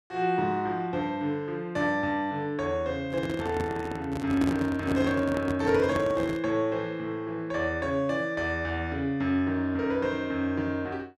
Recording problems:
handling noise; from 3 to 6.5 s; peak +3 dB vs average level

